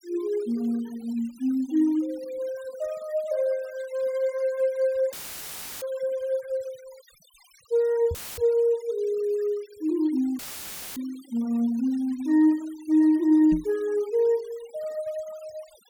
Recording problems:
denoising artefacts; signal-to-artefact ratio 25 dB
dropout; at 5 s for 0.5 s, at 8 s and at 10 s for 0.5 s; filled with static
knock on the microphone; at 8 s and at 14 s; peak -3 dB vs average level

